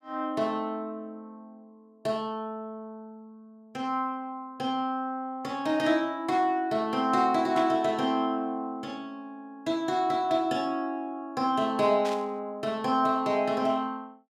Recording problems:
static burst; at 7.5 s and at 12 s; peak -6 dB vs average level

